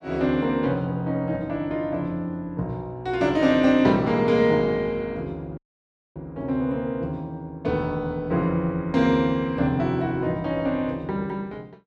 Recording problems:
audio cutting out; at 5.5 s for 0.5 s

